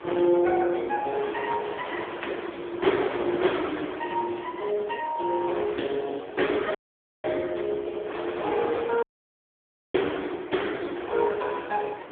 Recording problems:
phone line; 280 Hz to 3.4 kHz, AMR-NB
wind on the microphone; below 1.6 kHz, SNR 10 dB
audio cutting out; at 7 s and at 9 s for 1 s

